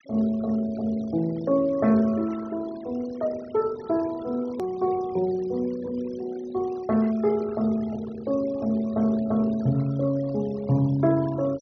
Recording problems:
treble cut off; nothing above 6 kHz
noise reduction artefacts; signal-to-artefact ratio 22 dB
edit click; at 4.5 s

